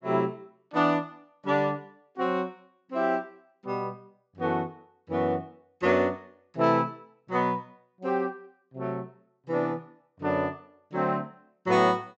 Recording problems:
treble cut off; nothing above 8 kHz

